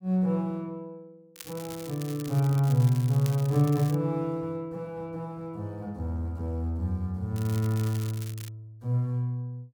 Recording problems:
crackling; from 1.5 to 4 s and from 7.5 to 8.5 s; loose cable, SNR 16 dB

